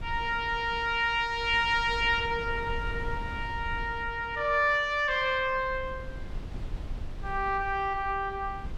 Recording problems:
wind noise; below 88 Hz, SNR 14 dB

